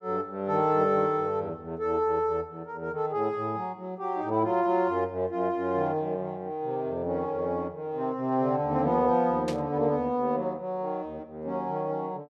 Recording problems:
burst of static; at 9.5 s; peak -6 dB vs average level

